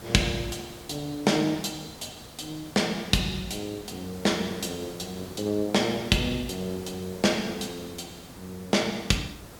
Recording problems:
background hiss; slope -5 dB per octave, SNR 16 dB

